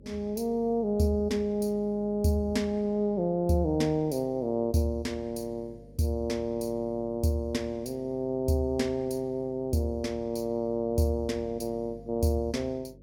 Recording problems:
hum; 50 Hz, harmonics up to 550 Hz, SNR 22 dB

